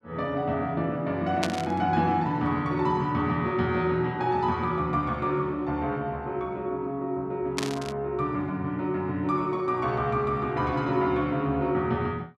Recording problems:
burst of static; at 1.5 s and at 7.5 s; peak +3 dB vs average level

